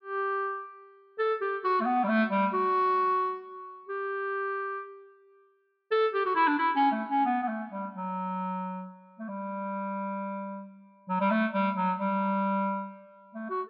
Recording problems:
treble missing; nothing above 5.5 kHz

